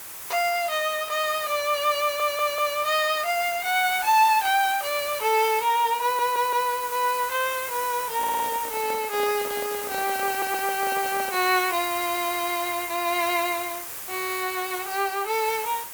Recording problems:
background hiss; slope -1 dB per octave, SNR 8 dB
audio stuttering; 4 times, first at 2 s
microphone handling noise; from 8 to 12 s; peak -9 dB vs average level

